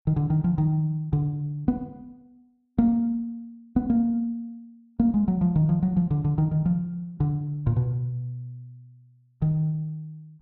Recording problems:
none

